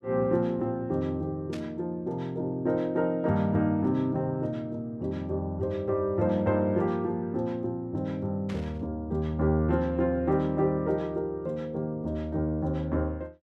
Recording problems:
burst of static; at 1.5 s and at 8.5 s; peak -10 dB vs average level

